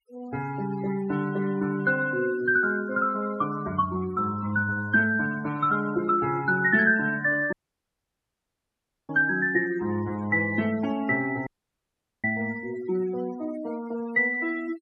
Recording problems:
noise reduction artefacts; signal-to-artefact ratio 18 dB
audio cutting out; at 7.5 s for 1.5 s and at 11 s for 1 s

